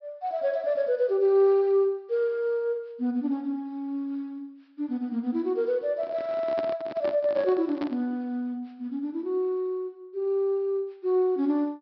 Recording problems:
treble cut off; nothing above 5.5 kHz
microphone handling noise; from 6 to 8 s; peak -4 dB vs average level

